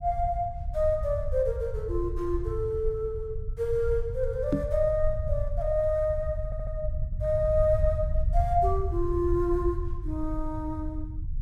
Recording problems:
rumble; below 80 Hz, SNR 4 dB
microphone thump; at 4.5 s; peak +6 dB vs average level
stutter; at 6.5 s

